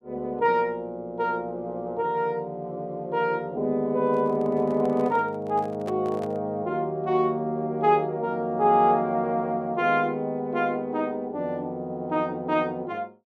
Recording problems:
handling noise; from 4 to 6.5 s; peak -8 dB vs average level

